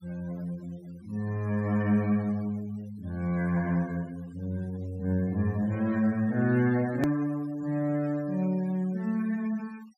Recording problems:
denoising artefacts; signal-to-artefact ratio 23 dB
click at an edit; at 7 s

